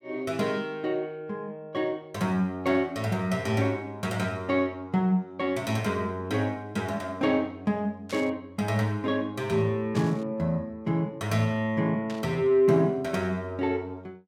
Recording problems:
static burst; at 8 s, at 10 s and at 12 s; peak -9 dB vs average level

